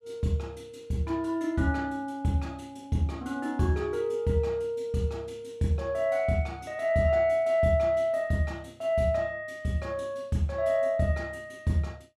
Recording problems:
none

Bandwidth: 14.5 kHz